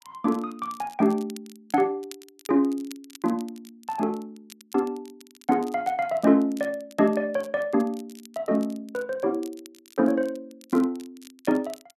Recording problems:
crackle; vinyl, SNR 24 dB

